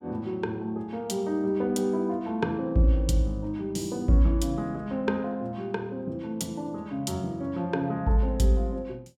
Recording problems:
none

